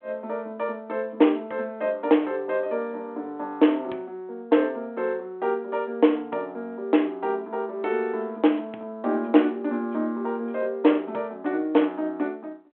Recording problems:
phone line; 240 Hz to 3.4 kHz, G.726

